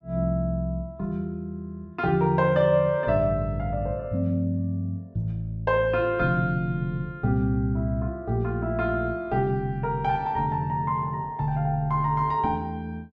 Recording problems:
none

